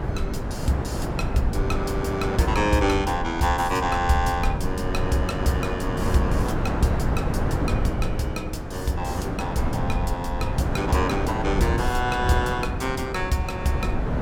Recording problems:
low-frequency rumble; below 110 Hz, SNR 6 dB
wind on the microphone; below 590 Hz, SNR 3 dB

